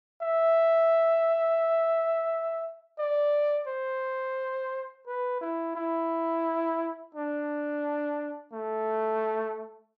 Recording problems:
none

